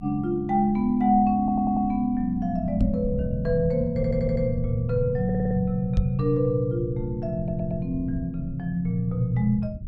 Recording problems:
rumble; below 120 Hz, SNR 12 dB
stutter; 4 times, first at 1.5 s
microphone bump; at 3 s and at 6 s; peak +4 dB vs average level

